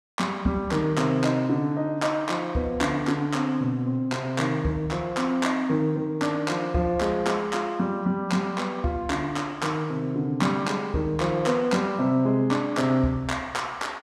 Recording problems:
none

